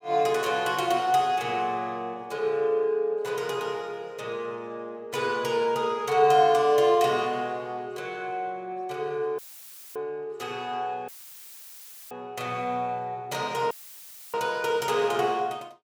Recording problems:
dropout; at 9.5 s for 0.5 s, at 11 s for 1 s and at 14 s for 0.5 s; filled with static

